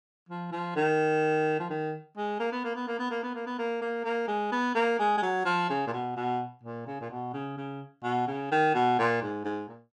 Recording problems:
none

